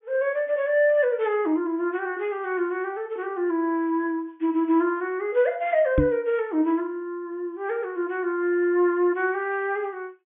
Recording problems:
low-pass filter; nothing above 3.5 kHz
microphone thump; at 6 s; peak +6 dB vs average level

